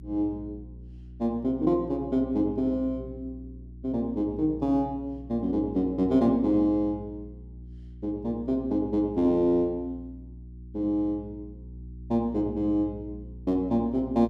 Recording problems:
hum; 60 Hz, harmonics up to 360 Hz, SNR 17 dB

